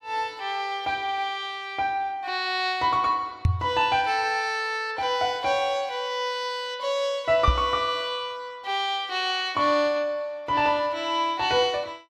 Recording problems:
microphone bump; at 3.5 s and at 7.5 s; peak +7 dB vs average level

